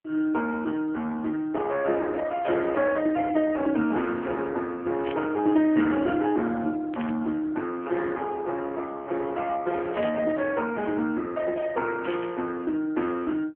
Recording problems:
telephone audio; 190 Hz to 3.2 kHz, AMR-NB
burst of static; 5 times, first at 2.5 s; peak -7 dB vs average level

